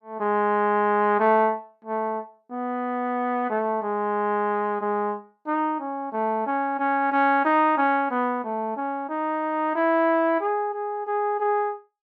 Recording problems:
none

